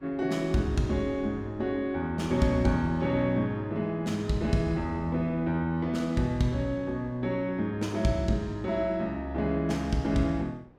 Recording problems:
wind on the microphone; below 360 Hz, SNR 22 dB

